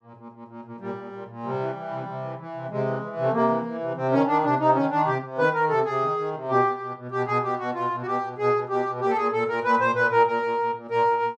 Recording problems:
none

